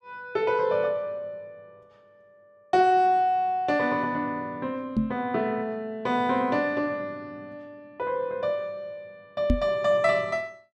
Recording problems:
microphone bump; at 5 s and at 9.5 s; peak +6 dB vs average level

